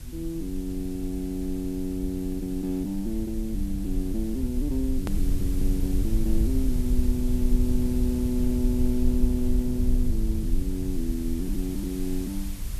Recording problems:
background hiss; slope +1 dB per octave, SNR 15 dB
rumble; below 58 Hz, SNR 1 dB
click at an edit; at 5 s

